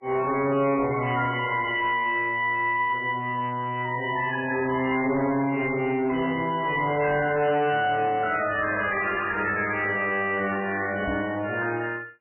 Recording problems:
lossy compression; MP3, log-spectral distance 4 dB, nothing above 3 kHz
distortion; soft clipping, signal-to-distortion ratio 10 dB
microphone thump; at 11 s; peak -3 dB vs average level

